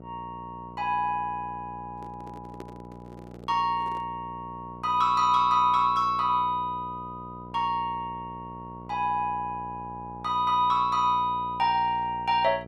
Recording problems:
hum; 60 Hz, harmonics up to 840 Hz, SNR 18 dB
handling noise; from 2 to 4 s; peak -12 dB vs average level

